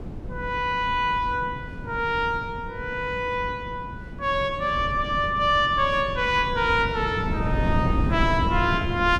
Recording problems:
wind noise; below 210 Hz, SNR 7 dB

